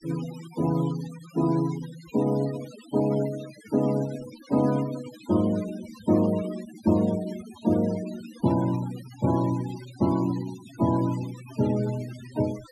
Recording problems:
noise reduction artefacts; signal-to-artefact ratio 17 dB

